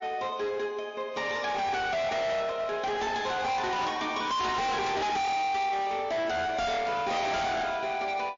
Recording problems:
lossy compression; MP3, log-spectral distance 3 dB, nothing above 6.2 kHz
distorted audio; hard clipping, signal-to-distortion ratio 6 dB

